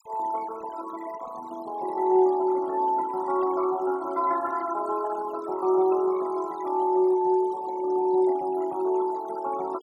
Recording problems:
denoising artefacts; signal-to-artefact ratio 19 dB

